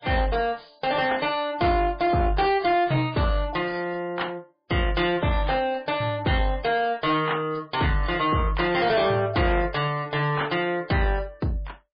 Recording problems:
lossy codec; MP3, log-spectral distance 4 dB, nothing above 4.5 kHz
distorted audio; soft clipping, signal-to-distortion ratio 11 dB

